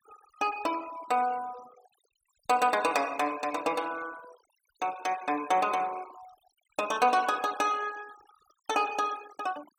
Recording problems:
denoising artefacts; signal-to-artefact ratio 20 dB

